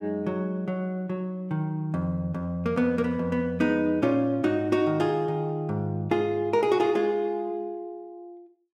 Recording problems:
none

